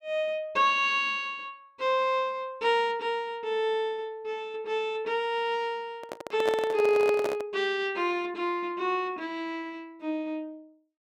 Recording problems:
handling noise; from 6 to 7.5 s; peak +1 dB vs average level

